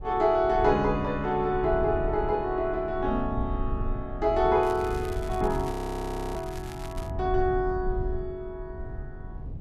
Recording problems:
rumble; below 94 Hz, SNR 9 dB
crackling; from 4.5 to 7 s; loose cable, SNR 19 dB
frozen audio; at 5.5 s for 0.5 s

